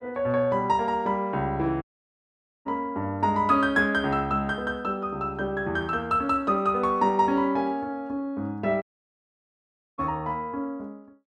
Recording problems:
dropout; at 2 s for 1 s and at 9 s for 1 s

